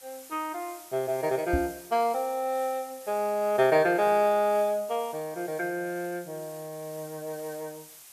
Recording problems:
hiss; slope +1 dB per octave, SNR 19 dB
knock on the microphone; at 1.5 s; peak +3 dB vs average level

